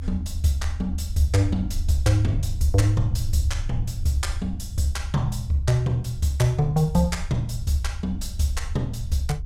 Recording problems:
rumble; below 78 Hz, SNR 7 dB

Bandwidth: 16 kHz